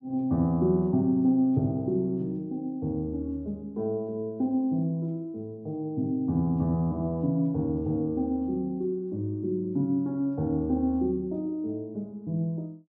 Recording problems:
none

